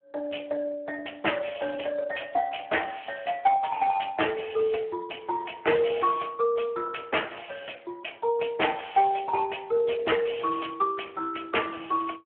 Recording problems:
phone line; 280 Hz to 3.3 kHz, Speex
distortion; hard clipping, uneven, signal-to-distortion ratio 9 dB

